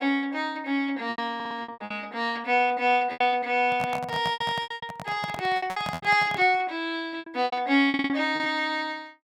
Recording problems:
packet loss; 13% of the sound replaced, filled with repeated pitch periods
stutter; at 1.5 s and at 8 s
handling noise; from 3.5 to 6.5 s; peak -4 dB vs average level

